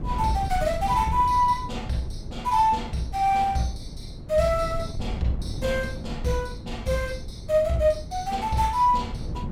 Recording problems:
wind on the microphone; below 130 Hz, SNR 11 dB

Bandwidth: 16 kHz